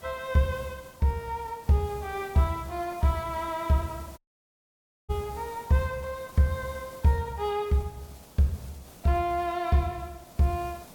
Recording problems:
background hiss; SNR 20 dB
audio cutting out; at 4 s for 1 s

